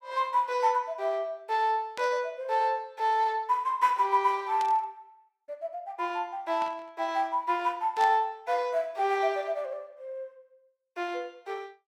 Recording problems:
burst of static; 4 times, first at 2 s; peak -9 dB vs average level

